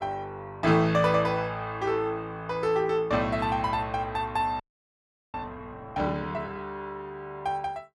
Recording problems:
frozen audio; at 4.5 s for 0.5 s

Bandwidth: 14.5 kHz